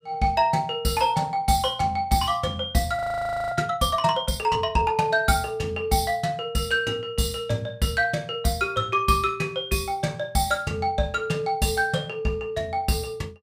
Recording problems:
frozen audio; at 3 s for 0.5 s

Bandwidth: 15.5 kHz